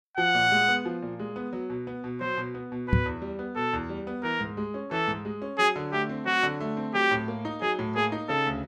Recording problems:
microphone bump; at 3 s; peak +8 dB vs average level

